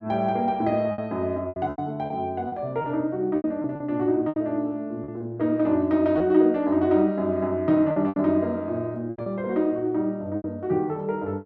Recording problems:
lost packets; 8% of the sound replaced, filled with repeated pitch periods

